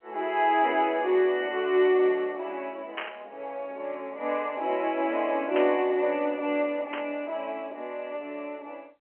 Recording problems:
phone line; 320 Hz to 3.3 kHz, G.711
static burst; at 3 s, at 5.5 s and at 7 s; peak -1 dB vs average level

